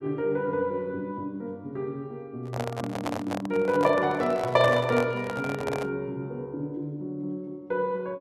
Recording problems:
microphone handling noise; from 2.5 to 6 s; peak +2 dB vs average level

